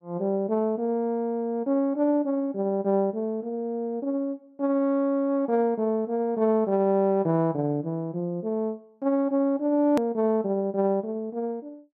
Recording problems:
edit click; at 10 s

